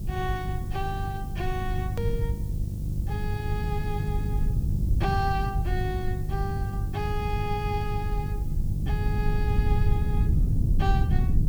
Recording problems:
hum; 50 Hz, harmonics up to 500 Hz, SNR 0 dB
hiss; SNR 18 dB
low-frequency rumble; below 110 Hz, SNR -4 dB
edit click; at 2 s

